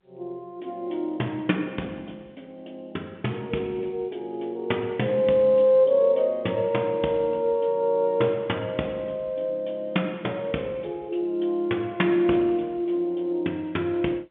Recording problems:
phone line; 190 Hz to 3.5 kHz, G.711

